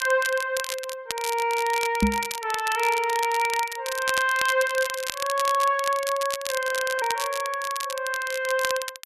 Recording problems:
crackling; vinyl, SNR 8 dB
microphone thump; at 2 s; peak +7 dB vs average level
frozen audio; at 6.5 s

